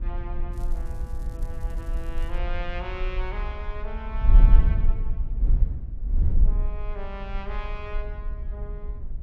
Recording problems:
mains hum; 60 Hz, harmonics up to 600 Hz, SNR 16 dB
wind noise; below 50 Hz, SNR -11 dB
crackling; from 0.5 to 2.5 s; loose cable, SNR 19 dB

